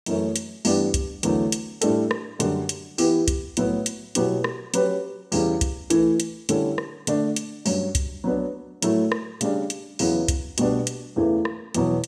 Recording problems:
none

